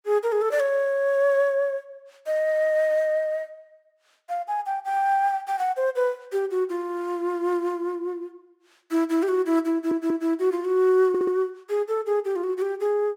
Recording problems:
audio stuttering; at 9.5 s and at 11 s

